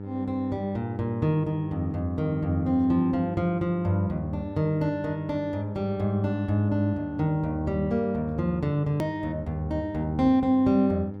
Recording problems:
electrical hum; 50 Hz, harmonics up to 900 Hz, SNR 12 dB
hard cut with a click; at 9 s

